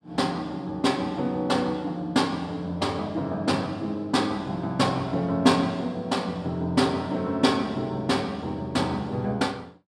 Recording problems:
none

